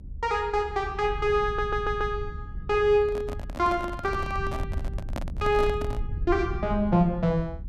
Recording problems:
low-frequency rumble; below 88 Hz, SNR 10 dB
stutter; at 1.5 s
microphone handling noise; from 3 to 6 s; peak -4 dB vs average level

